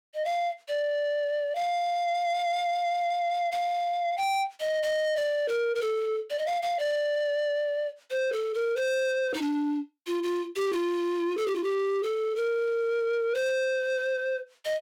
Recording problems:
distortion; soft clipping, signal-to-distortion ratio 7 dB

